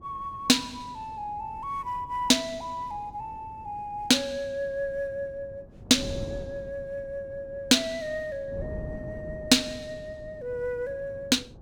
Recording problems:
wind noise; below 280 Hz, SNR 16 dB

